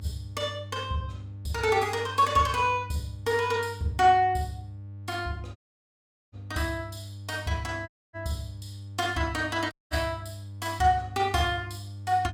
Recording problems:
hum; 50 Hz, harmonics up to 300 Hz, SNR 13 dB
audio cutting out; at 5.5 s for 1 s, at 8 s and at 9.5 s

